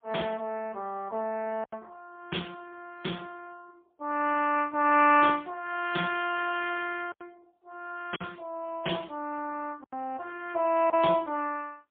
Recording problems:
phone line; 240 Hz to 3 kHz, AMR-NB, then MP3
lost packets; 3% of the sound replaced, filled with silence

